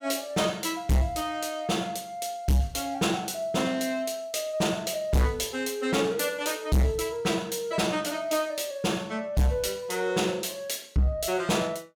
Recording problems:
distortion; soft clipping, signal-to-distortion ratio 7 dB

